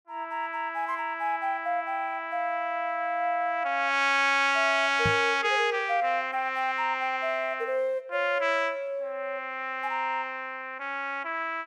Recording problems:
microphone bump; at 5 s; peak +1 dB vs average level

